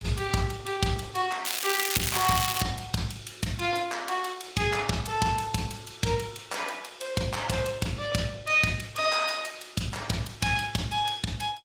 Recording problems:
codec artefacts; Opus, log-spectral distance 5 dB
crackling; from 1.5 to 2.5 s; loose cable, SNR 0 dB

